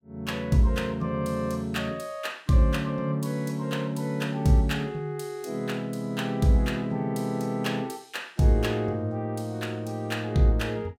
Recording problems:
none

